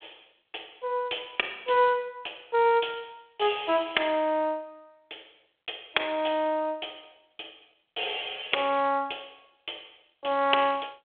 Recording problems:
telephone audio; 300 Hz to 3.5 kHz, G.726

